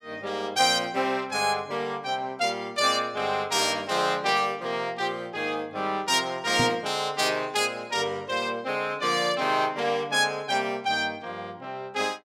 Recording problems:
microphone bump; at 6.5 s; peak 0 dB vs average level

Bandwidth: 16 kHz